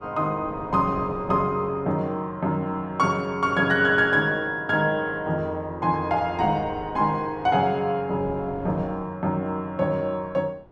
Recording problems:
wind on the microphone; below 590 Hz, SNR 20 dB

